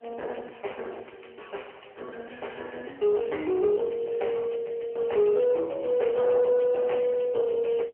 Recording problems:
telephone audio; 320 Hz to 3.1 kHz, AMR-NB
distortion; soft clipping, signal-to-distortion ratio 12 dB

